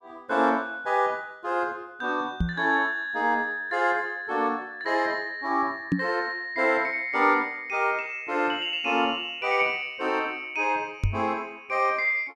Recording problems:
microphone bump; at 2.5 s, at 6 s and at 11 s; peak +5 dB vs average level

